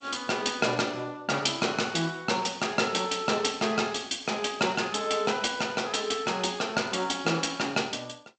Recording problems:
lossy compression; G.722, log-spectral distance 7 dB, nothing above 7.8 kHz

